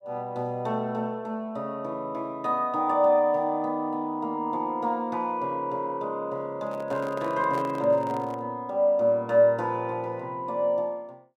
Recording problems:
microphone handling noise; from 6.5 to 8.5 s; peak -8 dB vs average level

